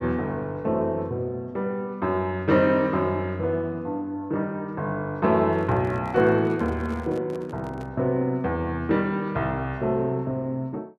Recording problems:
handling noise; from 5.5 to 8 s; peak -10 dB vs average level

